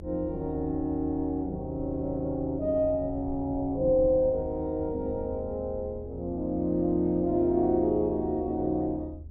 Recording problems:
low-frequency rumble; below 84 Hz, strongest tone 78 Hz, SNR 13 dB

